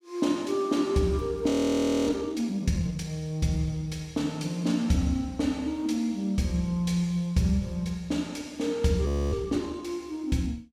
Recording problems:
frozen audio; at 1.5 s for 0.5 s and at 9 s

